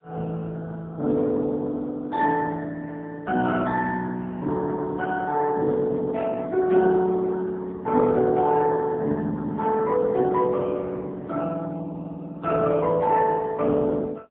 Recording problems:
phone line; 170 Hz to 3 kHz, AMR-NB, then MP3

